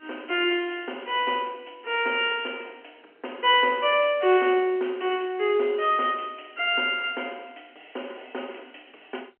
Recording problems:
telephone audio; 280 Hz to 3.2 kHz, G.711

